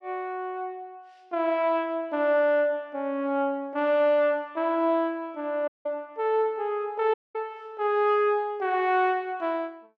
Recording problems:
dropout; at 5.5 s and at 7 s

